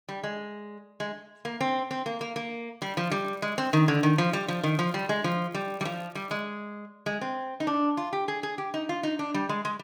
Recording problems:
crackle; from 3 to 6.5 s; loose cable, SNR 29 dB

